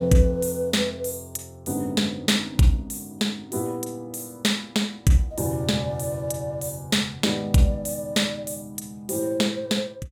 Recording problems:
none

